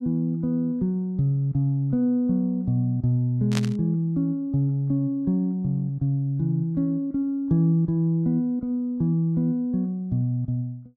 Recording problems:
burst of static; at 3.5 s; peak -2 dB vs average level

